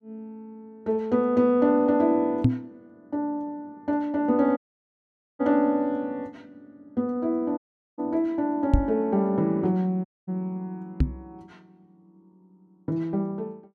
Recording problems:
microphone thump; at 2.5 s, at 8.5 s and at 11 s; peak +9 dB vs average level
dropout; at 4.5 s for 1 s, at 7.5 s and at 10 s

